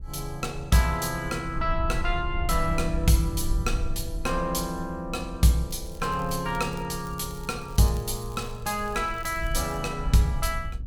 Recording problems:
wind on the microphone; below 64 Hz, SNR 8 dB
crackling; from 5.5 to 10 s; loose cable, SNR 24 dB

